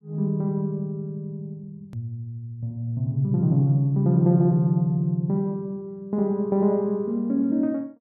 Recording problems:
edit click; at 2 s

